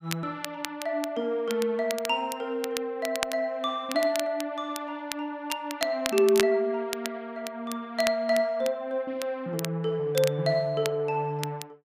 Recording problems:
crackling; vinyl, SNR 10 dB

